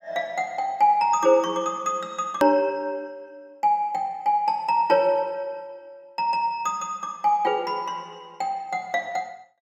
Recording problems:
hard cut with a click; at 2.5 s

